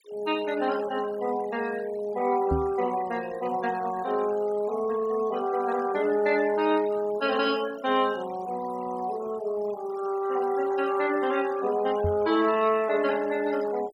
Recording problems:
denoising artefacts; signal-to-artefact ratio 17 dB
knock on the microphone; at 2.5 s and at 12 s; peak +2 dB vs average level

